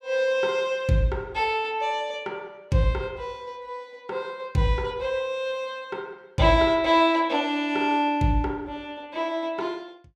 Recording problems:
none

